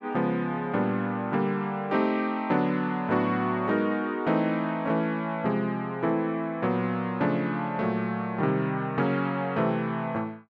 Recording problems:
none

